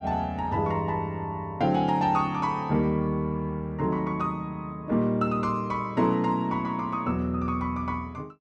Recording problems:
none

